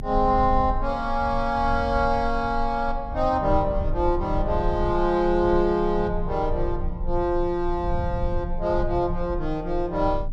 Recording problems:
low-frequency rumble; below 68 Hz, strongest tone 22 Hz, SNR 8 dB

